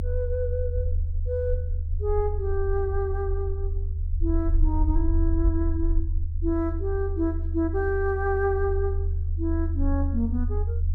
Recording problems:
rumble; below 80 Hz, strongest tone 30 Hz, SNR -1 dB

